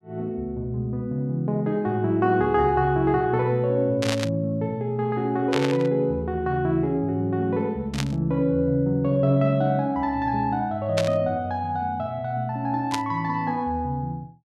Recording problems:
burst of static; 5 times, first at 4 s; peak 0 dB vs average level

